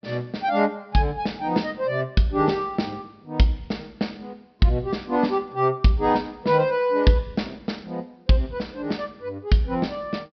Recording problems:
treble cut off; nothing above 5.5 kHz

